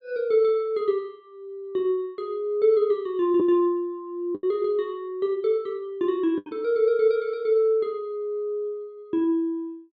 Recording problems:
lost packets; 2% of the sound replaced, filled with the last packet

